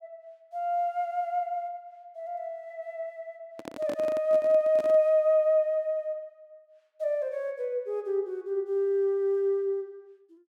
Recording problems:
handling noise; from 3.5 to 5 s; peak -7 dB vs average level

